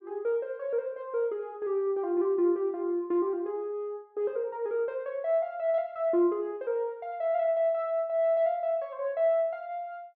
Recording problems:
none

